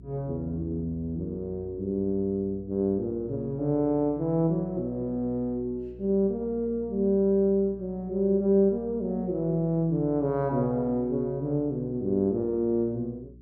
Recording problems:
hum; 60 Hz, harmonics up to 420 Hz, SNR 21 dB

